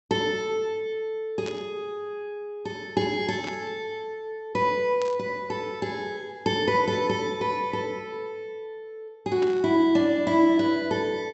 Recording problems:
low-pass filter; nothing above 7.8 kHz
static burst; 4 times, first at 1.5 s; peak -8 dB vs average level

